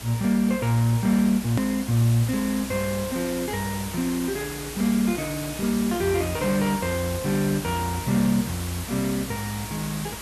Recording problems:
electrical hum; 60 Hz, harmonics up to 420 Hz, SNR 20 dB
background hiss; slope -2 dB per octave, SNR 10 dB
edit click; at 1.5 s

